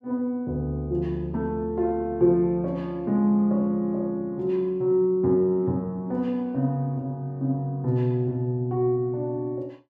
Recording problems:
none

